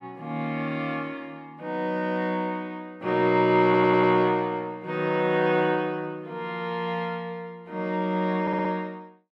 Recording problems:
audio stuttering; at 3.5 s and at 8.5 s

